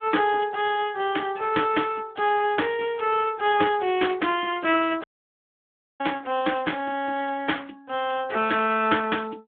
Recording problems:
phone line; 240 Hz to 3.5 kHz, Speex
lost packets; 0.4% of the sound replaced, filled with repeated pitch periods
audio cutting out; at 5 s for 1 s

